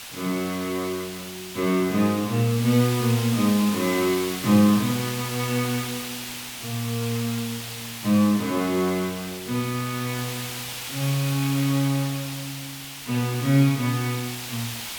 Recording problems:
hiss; SNR 9 dB

